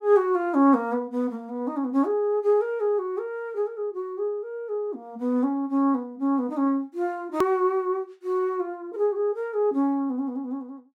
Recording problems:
edit click; at 7.5 s

